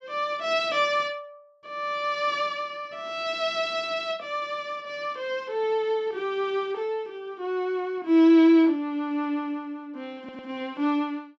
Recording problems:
audio stuttering; at 10 s

